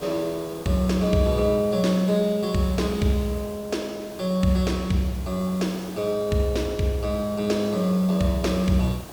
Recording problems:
background hiss; SNR 17 dB

